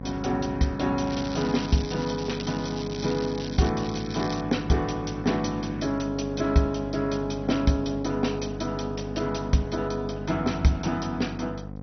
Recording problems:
codec artefacts; MP2, log-spectral distance 8 dB, nothing above 6 kHz
hum; 50 Hz, harmonics up to 1.1 kHz, SNR 9 dB
crackling; from 1 to 3.5 s and at 4 s; loose cable, SNR 13 dB

